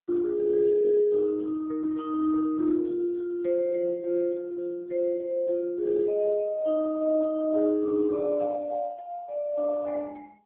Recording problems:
telephone audio; 240 Hz to 2.1 kHz, AMR-NB

